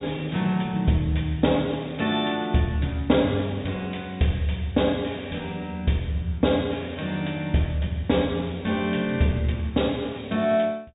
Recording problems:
treble missing; nothing above 4 kHz

